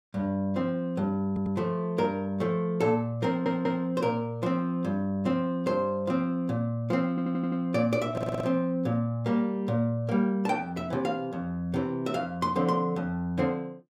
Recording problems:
audio stuttering; 4 times, first at 1.5 s

